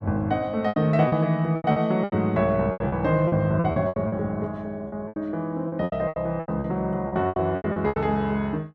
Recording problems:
packet loss; 17% of the sound replaced, filled with repeated pitch periods

